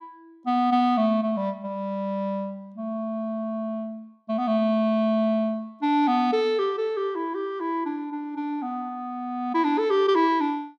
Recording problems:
none

